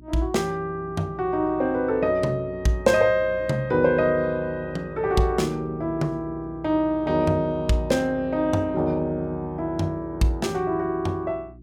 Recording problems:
electrical hum; 60 Hz, harmonics up to 360 Hz, SNR 20 dB

